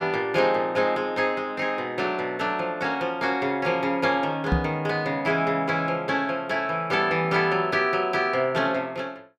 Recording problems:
microphone bump; at 4.5 s; peak +4 dB vs average level

